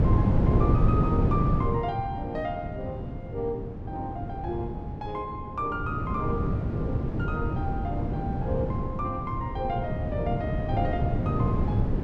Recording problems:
wind noise; below 220 Hz, SNR -5 dB

